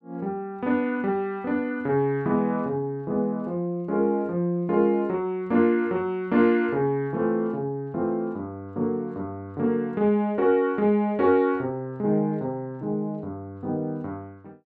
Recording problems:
none

